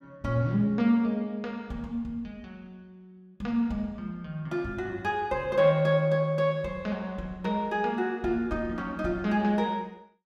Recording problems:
none

